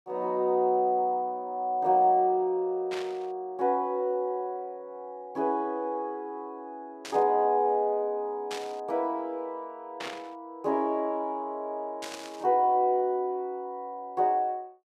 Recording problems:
static burst; 5 times, first at 3 s; peak -5 dB vs average level

